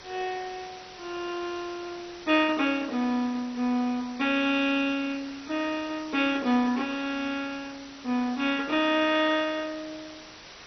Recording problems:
lossy codec; MP2, log-spectral distance 11 dB, nothing above 6 kHz
hiss; slope -1 dB per octave, SNR 17 dB

